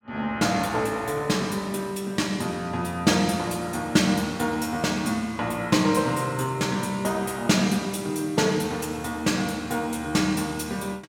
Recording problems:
none

